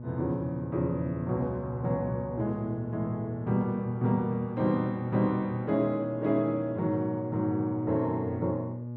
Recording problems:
hum; 60 Hz, harmonics up to 840 Hz, SNR 8 dB

